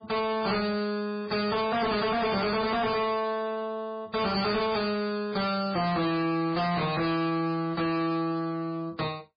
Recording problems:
lossy codec; MP3, then MP3, log-spectral distance 5 dB, nothing above 4.6 kHz
distorted audio; hard clipping, uneven, signal-to-distortion ratio 7 dB

